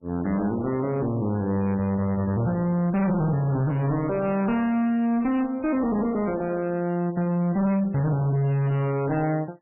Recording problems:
lossy compression; MP3, log-spectral distance 2 dB, nothing above 2.6 kHz
distorted audio; hard clipping, uneven, signal-to-distortion ratio 7 dB

